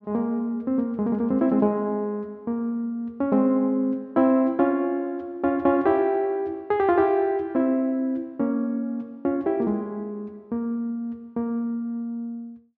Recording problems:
none

